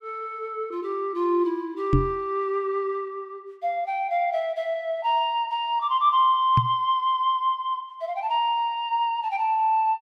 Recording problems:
microphone thump; at 2 s and at 6.5 s; peak +7 dB vs average level

